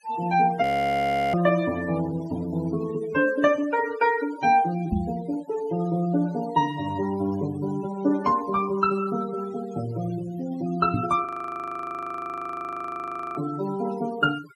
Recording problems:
denoising artefacts; signal-to-artefact ratio 17 dB
frozen audio; at 0.5 s for 0.5 s and at 11 s for 2 s
microphone bump; at 5 s and at 11 s; peak +4 dB vs average level

